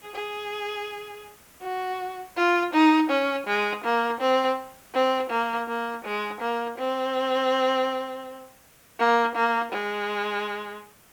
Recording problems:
background hiss; slope -3 dB per octave, SNR 27 dB

